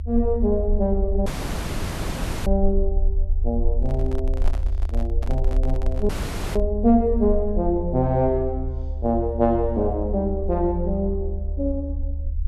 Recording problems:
low-frequency rumble; below 72 Hz, SNR 3 dB
dropout; at 1.5 s for 1 s and at 6 s
handling noise; from 4 to 6.5 s; peak -7 dB vs average level

